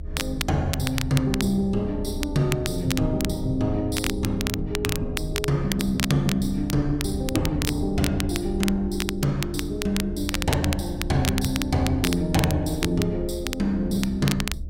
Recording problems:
mains hum; 60 Hz, harmonics up to 660 Hz, SNR 25 dB
rumble; below 74 Hz, strongest tone 28 Hz, SNR 10 dB
crackle; vinyl, SNR 7 dB

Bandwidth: 16 kHz